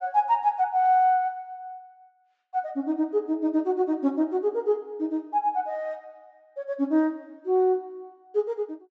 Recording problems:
treble cut off; nothing above 8 kHz

